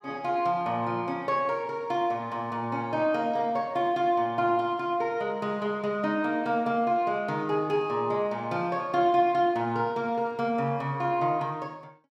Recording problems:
none

